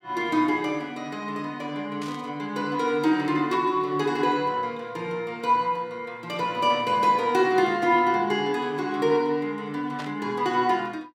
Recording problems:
static burst; 4 times, first at 2 s; peak -9 dB vs average level

